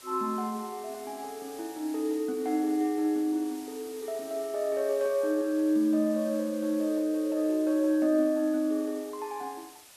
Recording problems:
hiss; slope 0 dB per octave, SNR 20 dB

